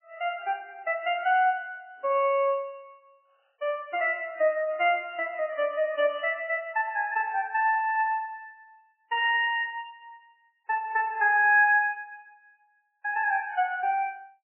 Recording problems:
codec artefacts; MP3, log-spectral distance 3 dB, nothing above 2.8 kHz

